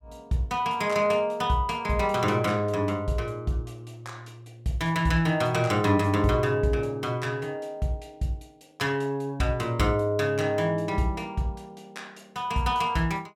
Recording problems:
none

